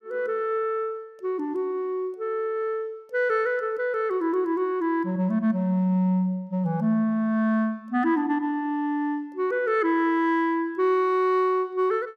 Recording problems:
none

